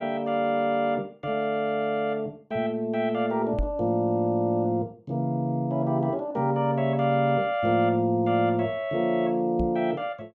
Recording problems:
microphone thump; at 3.5 s and at 9.5 s; peak 0 dB vs average level

